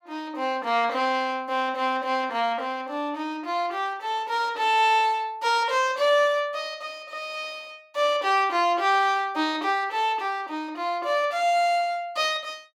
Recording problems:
none

